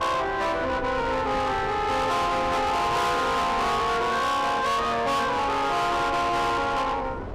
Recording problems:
distortion; soft clipping, signal-to-distortion ratio 7 dB
wind on the microphone; below 1.1 kHz, SNR 12 dB

